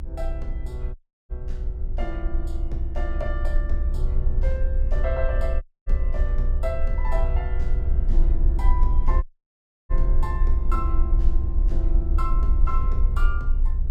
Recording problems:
rumble; below 58 Hz, strongest tone 26 Hz, SNR -9 dB
dropout; at 1 s, at 5.5 s and at 9 s for 0.5 s

